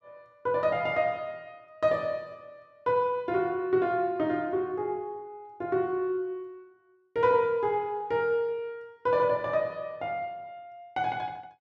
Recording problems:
none

